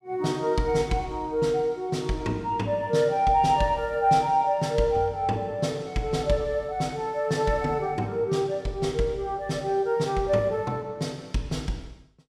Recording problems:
none

